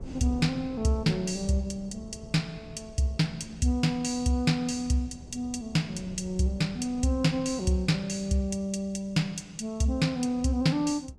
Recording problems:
wind noise; below 220 Hz, SNR 19 dB

